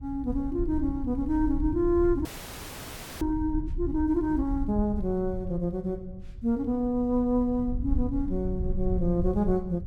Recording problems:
rumble; below 72 Hz, SNR 8 dB
frozen audio; at 2.5 s for 1 s

